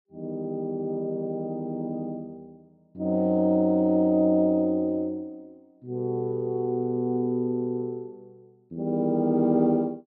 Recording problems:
none

